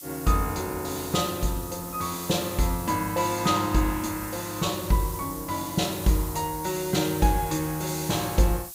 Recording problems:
hiss; SNR 11 dB

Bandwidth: 15.5 kHz